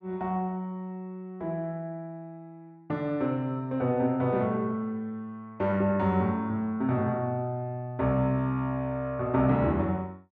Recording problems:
none

